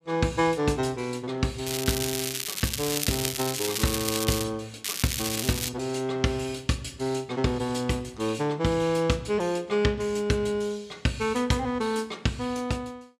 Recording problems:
crackling; from 1.5 to 4.5 s and at 5 s; loose cable, SNR 2 dB

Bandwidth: 14.5 kHz